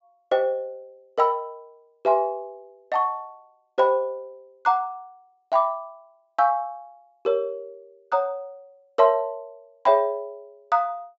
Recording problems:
treble cut off; nothing above 8 kHz

